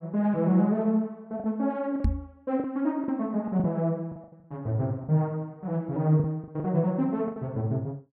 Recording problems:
packet loss; 8% of the sound replaced, filled with the last packet
knock on the microphone; at 2 s; peak +5 dB vs average level

